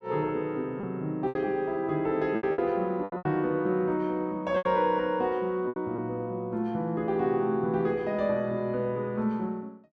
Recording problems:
packet loss; 6% of the sound replaced, filled with repeated pitch periods

